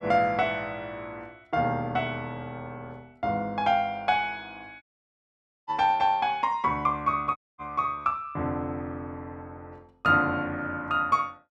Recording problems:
audio cutting out; at 5 s for 1 s and at 7.5 s

